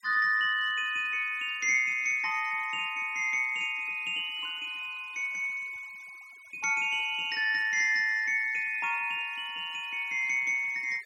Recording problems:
noise reduction artefacts; signal-to-artefact ratio 26 dB

